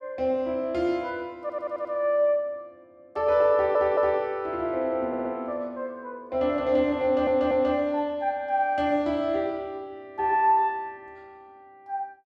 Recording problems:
stutter; 4 times, first at 1.5 s

